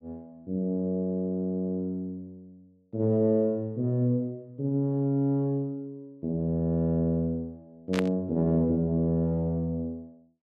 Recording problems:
static burst; at 8 s; peak 0 dB vs average level

